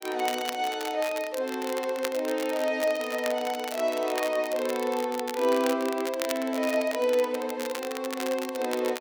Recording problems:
crackling; vinyl, SNR 11 dB

